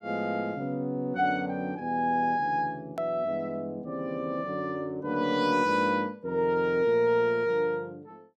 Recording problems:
edit click; at 3 s

